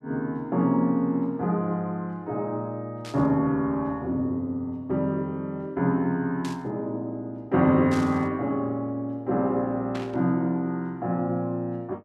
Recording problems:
burst of static; 4 times, first at 3 s; peak -9 dB vs average level

